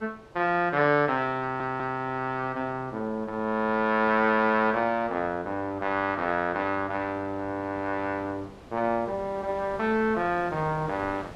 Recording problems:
wind noise; below 920 Hz, SNR 21 dB
audio stuttering; at 1.5 s

